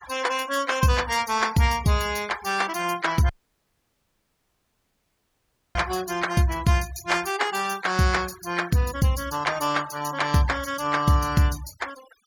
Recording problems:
noise reduction artefacts; signal-to-artefact ratio 17 dB
dropout; at 3.5 s for 2.5 s

